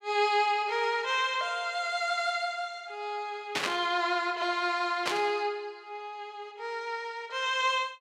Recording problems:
burst of static; at 3.5 s and at 5 s; peak +3 dB vs average level

